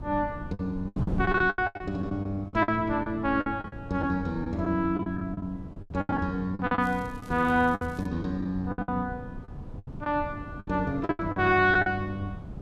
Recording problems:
wind noise; below 200 Hz, SNR 12 dB
packet loss; 15% of the sound replaced, filled with the last packet
crackling; from 7 to 8 s; loose cable, SNR 28 dB

